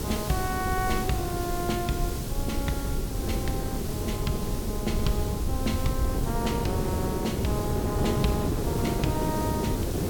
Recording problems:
hiss; slope +2 dB per octave, SNR 7 dB
low-frequency rumble; below 76 Hz, SNR 5 dB
wind noise; below 400 Hz, SNR -1 dB

